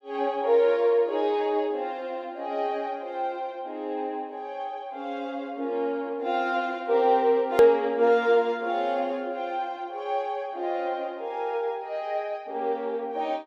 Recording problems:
hard cut with a click; at 7.5 s

